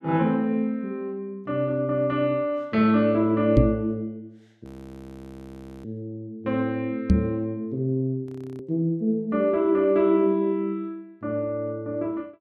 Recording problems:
microphone bump; at 3.5 s and at 7 s; peak +10 dB vs average level
frozen audio; at 4.5 s for 1 s and at 8.5 s

